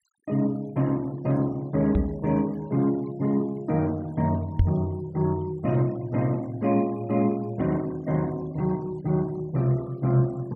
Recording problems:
denoising artefacts; signal-to-artefact ratio 26 dB
microphone thump; at 2 s and at 4.5 s; peak +7 dB vs average level

